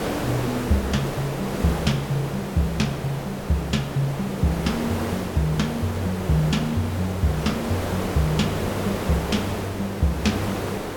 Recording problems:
background hiss; slope -7 dB per octave, SNR 4 dB

